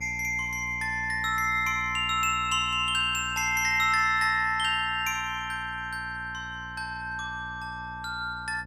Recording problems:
hum; 60 Hz, harmonics up to 840 Hz, SNR 18 dB

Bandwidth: 14.5 kHz